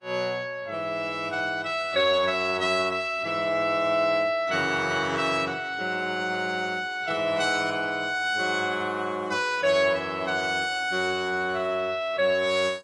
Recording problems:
codec artefacts; AAC, then AAC, log-spectral distance 2 dB, nothing above 10.4 kHz

